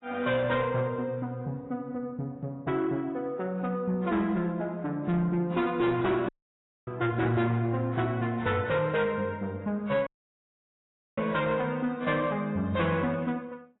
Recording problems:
lossy codec; AAC, log-spectral distance 2 dB, nothing above 3.8 kHz
distorted audio; soft clipping, signal-to-distortion ratio 12 dB
dropout; at 6.5 s for 0.5 s and at 10 s for 1 s

